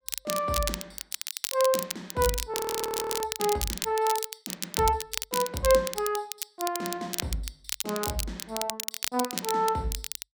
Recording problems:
crackle; vinyl, SNR 4 dB
audio freezing; at 2.5 s for 0.5 s

